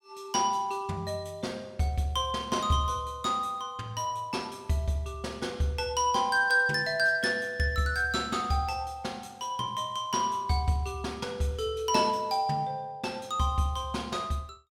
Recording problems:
none

